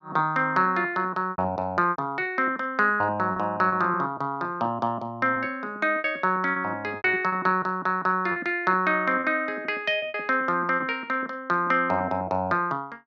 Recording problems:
lost packets; 9% of the sound replaced, filled with repeated pitch periods

